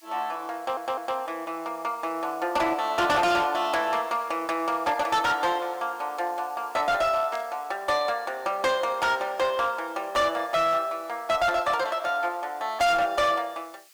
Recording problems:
distorted audio; hard clipping, signal-to-distortion ratio 8 dB
background hiss; slope +4 dB per octave, SNR 26 dB
stutter; at 0.5 s
static burst; at 7.5 s and at 11 s; peak -11 dB vs average level

